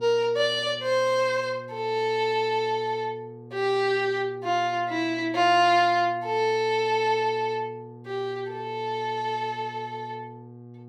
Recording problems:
electrical hum; 60 Hz, harmonics up to 840 Hz, SNR 20 dB

